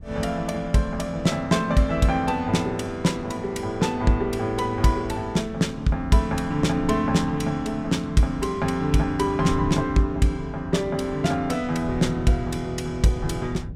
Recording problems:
wind noise; below 150 Hz, SNR 15 dB

